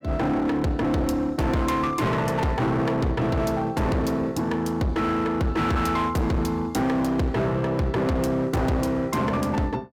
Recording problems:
distorted audio; hard clipping, uneven, signal-to-distortion ratio 7 dB

